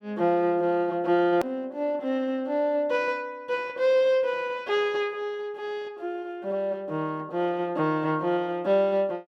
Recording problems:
edit click; at 1.5 s

